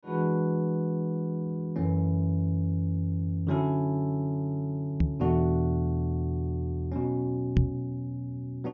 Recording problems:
treble cut off; nothing above 6.9 kHz
knock on the microphone; at 5 s and at 7.5 s; peak +8 dB vs average level

